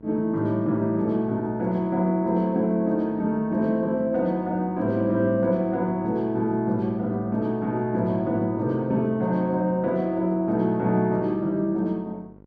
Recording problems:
electrical hum; 50 Hz, harmonics up to 1.1 kHz, SNR 25 dB

